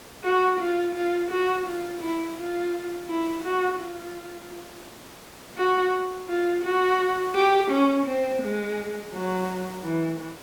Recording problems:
hiss; slope -4 dB per octave, SNR 18 dB

